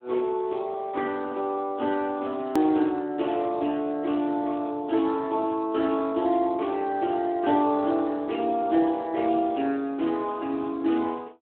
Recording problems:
telephone audio; 240 Hz to 2.9 kHz, Speex
edit click; at 2.5 s

